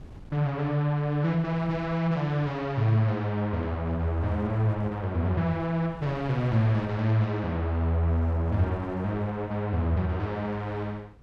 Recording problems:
wind on the microphone; below 220 Hz, SNR 21 dB

